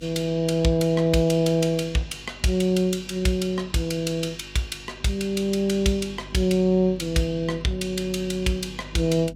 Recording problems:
hum; 50 Hz, harmonics up to 300 Hz, SNR 21 dB

